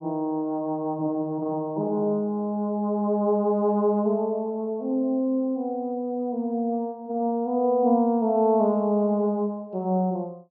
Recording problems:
low-pass filter; nothing above 5.9 kHz

